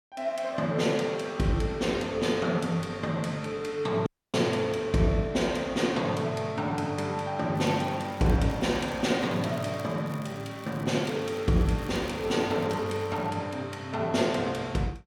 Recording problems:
audio cutting out; at 4 s
crackle; at 7.5 s and from 8.5 to 13 s; loose cable, SNR 24 dB

